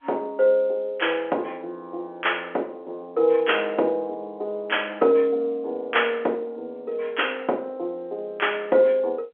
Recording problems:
telephone audio; 280 Hz to 3.5 kHz, G.711

